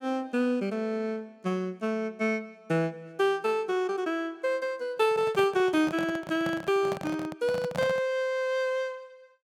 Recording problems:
microphone handling noise; from 5 to 8 s; peak -3 dB vs average level

